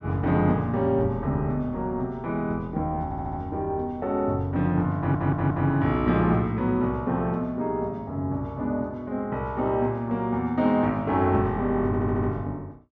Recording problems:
stutter; at 3 s, at 5 s and at 12 s

